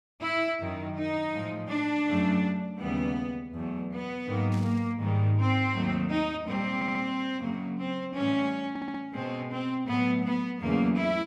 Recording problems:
burst of static; at 4.5 s; peak -15 dB vs average level
stutter; at 7 s and at 8.5 s

